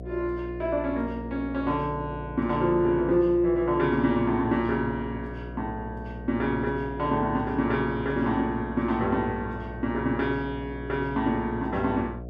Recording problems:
electrical hum; 60 Hz, harmonics up to 720 Hz, SNR 12 dB

